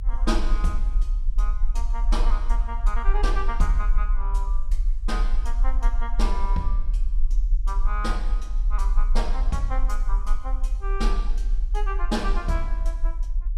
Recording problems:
rumble; below 38 Hz, SNR -6 dB

